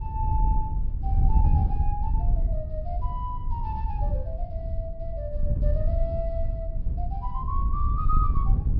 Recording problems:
treble missing; nothing above 5.5 kHz
wind noise; below 76 Hz, SNR -8 dB

